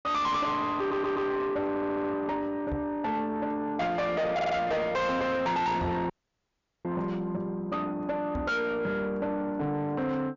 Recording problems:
treble cut off; nothing above 7.2 kHz
distorted audio; soft clipping, signal-to-distortion ratio 7 dB
stutter; at 1 s, at 1.5 s and at 4.5 s
microphone thump; at 2.5 s, at 6 s and at 8.5 s; peak 0 dB vs average level
audio cutting out; at 6 s for 1 s

